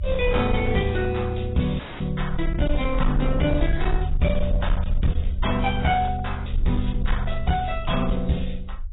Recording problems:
lossy codec; AAC, log-spectral distance 3 dB, nothing above 3.8 kHz
distortion; hard clipping, uneven, signal-to-distortion ratio 11 dB
rumble; below 76 Hz, SNR 4 dB
audio cutting out; at 2 s

